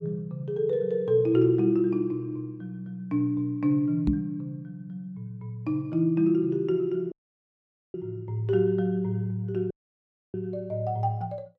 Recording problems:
microphone thump; at 4 s; peak +4 dB vs average level
dropout; at 7 s for 1 s and at 9.5 s for 0.5 s

